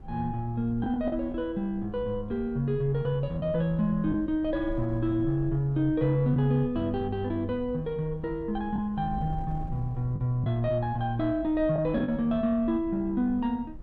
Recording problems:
wind noise; below 80 Hz, SNR 16 dB
lost packets; 2% of the sound replaced, filled with the last packet

